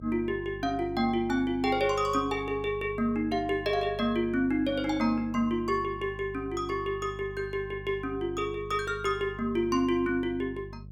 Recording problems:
hum; 50 Hz, harmonics up to 400 Hz, SNR 15 dB

